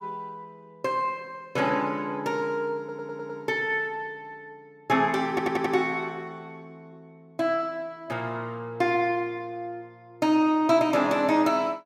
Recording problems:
audio stuttering; at 3 s and at 5.5 s

